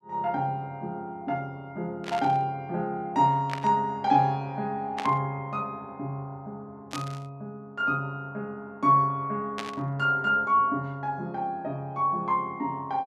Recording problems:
burst of static; 5 times, first at 2 s; peak -2 dB vs average level

